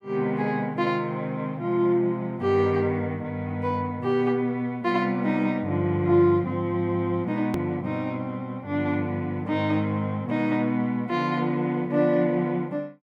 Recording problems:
edit click; at 7.5 s

